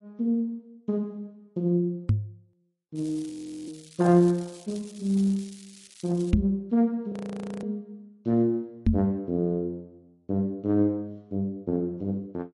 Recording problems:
lossy codec; AAC, then MP3, log-spectral distance 2 dB, nothing above 11.3 kHz
microphone bump; at 2 s, at 6.5 s and at 9 s; peak +10 dB vs average level
crackling; from 3 to 6.5 s; loose cable, SNR 21 dB
frozen audio; at 3.5 s and at 7 s for 0.5 s

